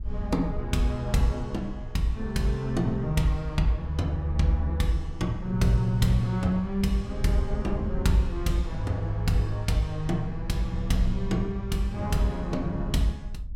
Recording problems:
wind on the microphone; below 62 Hz, SNR 11 dB

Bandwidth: 16.5 kHz